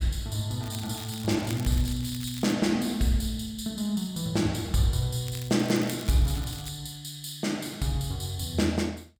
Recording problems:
crackle; from 0.5 to 2.5 s and from 5.5 to 6.5 s; loose cable, SNR 15 dB

